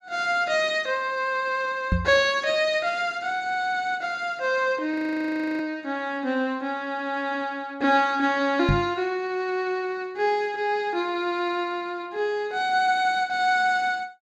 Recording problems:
knock on the microphone; at 2 s and at 8.5 s; peak +5 dB vs average level
frozen audio; at 5 s for 0.5 s

